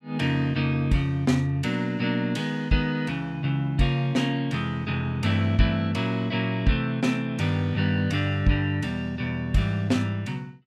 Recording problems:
none

